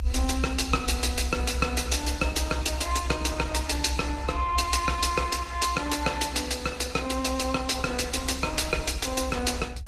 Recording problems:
lossy codec; Opus, log-spectral distance 4 dB, nothing above 14.3 kHz
low-frequency rumble; below 68 Hz, strongest tone 66 Hz, SNR 4 dB

